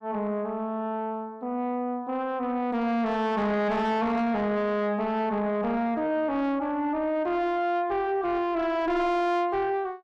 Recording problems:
distorted audio; soft clipping, signal-to-distortion ratio 7 dB

